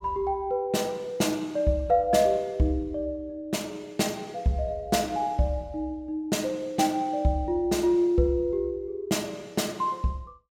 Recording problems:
none

